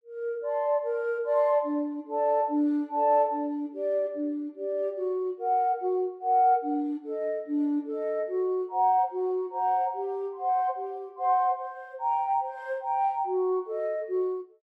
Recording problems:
none

